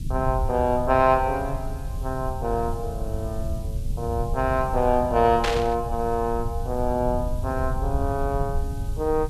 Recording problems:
background hiss; slope +5 dB per octave, SNR 25 dB
low-frequency rumble; below 98 Hz, SNR 6 dB
burst of static; at 5.5 s; peak +2 dB vs average level

